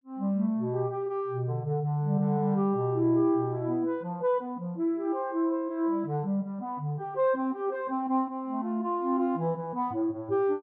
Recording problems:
none

